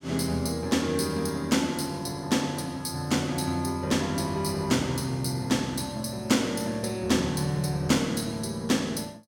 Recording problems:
none

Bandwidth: 17 kHz